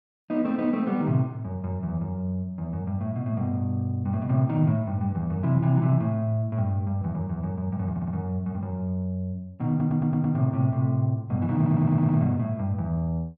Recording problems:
stutter; at 8 s, at 9.5 s and at 12 s

